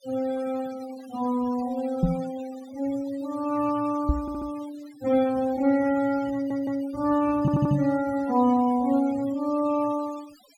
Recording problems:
noise reduction artefacts; signal-to-artefact ratio 20 dB
microphone bump; at 2 s, at 4 s and at 7.5 s; peak +7 dB vs average level
stutter; at 4 s, at 6.5 s and at 7.5 s

